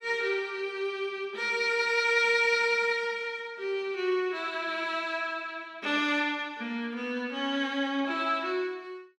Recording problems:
none

